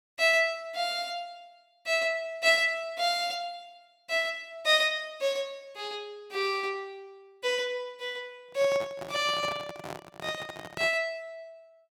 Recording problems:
microphone handling noise; from 8.5 to 11 s; peak -6 dB vs average level

